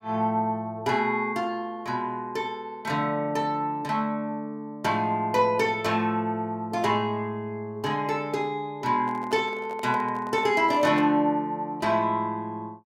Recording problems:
microphone handling noise; from 9 to 11 s; peak -7 dB vs average level

